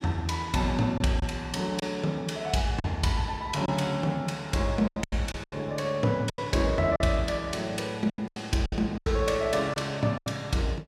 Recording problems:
packet loss; 8% of the sound replaced, filled with silence

